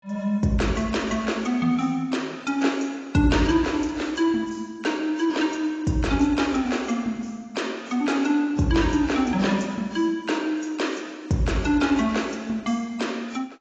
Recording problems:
lossy codec; AAC, log-spectral distance 4 dB, nothing above 7.3 kHz

